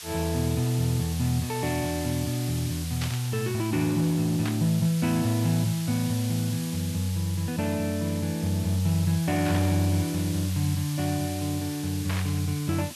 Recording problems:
background hiss; slope +3 dB per octave, SNR 11 dB
burst of static; 4 times, first at 3 s; peak -4 dB vs average level

